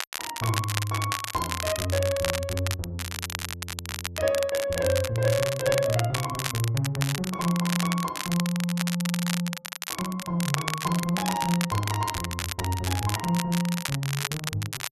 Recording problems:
crackling; vinyl, SNR 5 dB

